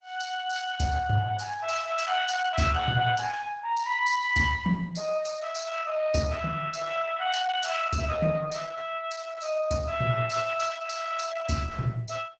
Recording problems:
lossy codec; Opus, log-spectral distance 6 dB

